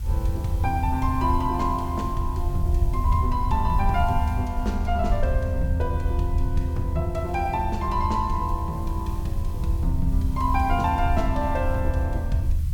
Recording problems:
background hiss; slope +1 dB per octave, SNR 23 dB
low-frequency rumble; below 80 Hz, SNR -1 dB

